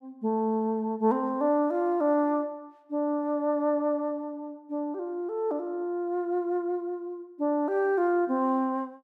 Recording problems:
none

